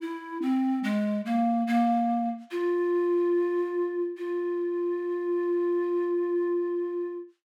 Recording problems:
none

